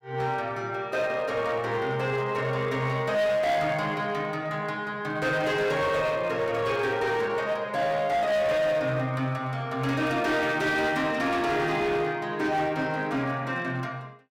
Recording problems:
distorted audio; hard clipping, signal-to-distortion ratio 11 dB

